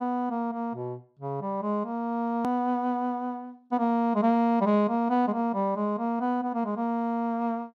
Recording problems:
click at an edit; at 2.5 s

